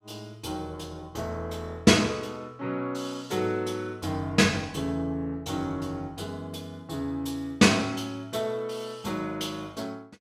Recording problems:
none

